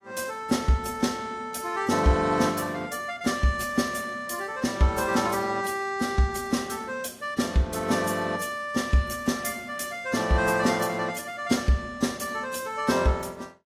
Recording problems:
lossy compression; AAC, log-spectral distance 4 dB, nothing above 14.7 kHz

